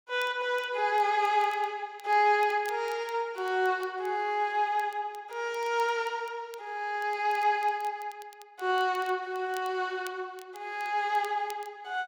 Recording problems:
crackle; vinyl, SNR 25 dB

